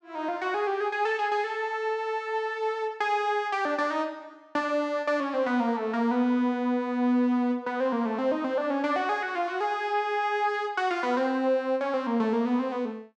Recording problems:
none

